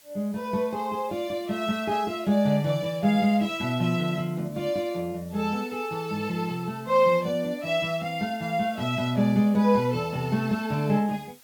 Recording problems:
hiss; slope +1 dB per octave, SNR 26 dB

